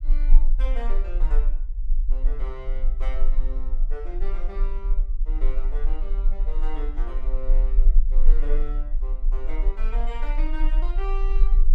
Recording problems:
rumble; below 32 Hz, strongest tone 20 Hz, SNR -13 dB

